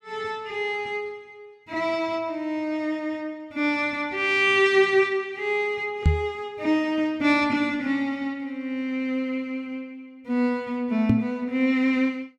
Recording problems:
knock on the microphone; at 6 s and at 11 s; peak +8 dB vs average level

